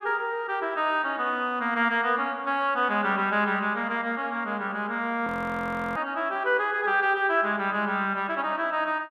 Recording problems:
frozen audio; at 5.5 s for 0.5 s

